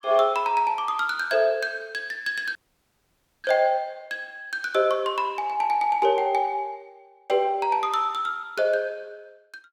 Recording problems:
dropout; at 2.5 s for 1 s

